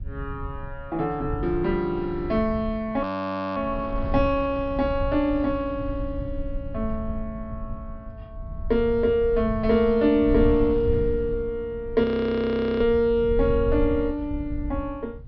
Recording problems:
treble missing; nothing above 5.5 kHz
rumble; below 92 Hz, SNR 10 dB
wind on the microphone; below 220 Hz, SNR 19 dB
audio freezing; at 3 s for 0.5 s and at 12 s for 1 s

